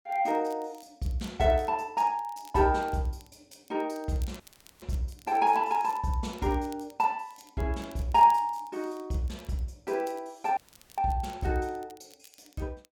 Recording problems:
crackle; vinyl, SNR 27 dB
audio cutting out; at 4.5 s and at 11 s

